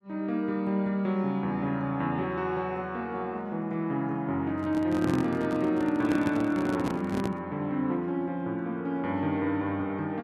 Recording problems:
handling noise; from 4.5 to 7.5 s; peak +2 dB vs average level

